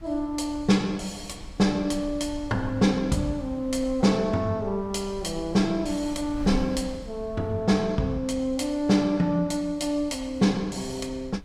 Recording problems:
wind on the microphone; below 80 Hz, SNR 18 dB

